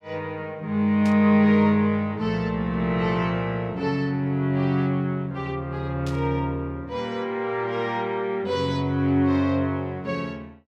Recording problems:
static burst; at 1 s and at 6 s; peak -11 dB vs average level

